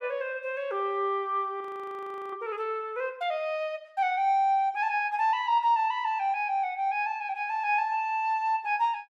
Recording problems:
frozen audio; at 1.5 s for 0.5 s

